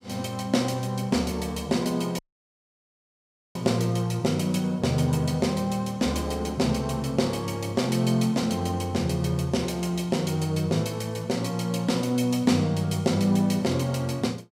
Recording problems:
dropout; at 2 s for 1.5 s

